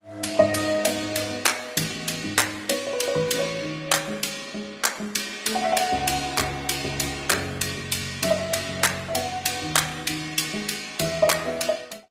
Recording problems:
lossy compression; AAC, then Opus, log-spectral distance 6 dB, nothing above 16 kHz

